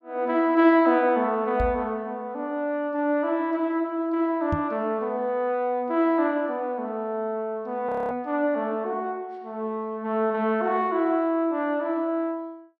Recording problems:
knock on the microphone; at 1.5 s, at 4.5 s and at 8 s; peak +1 dB vs average level
audio freezing; at 8 s

